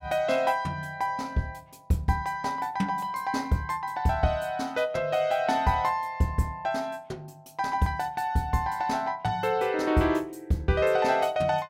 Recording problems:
none

